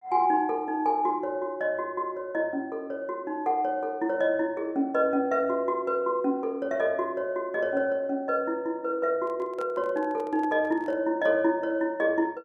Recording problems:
microphone handling noise; from 9 to 11 s; peak -10 dB vs average level

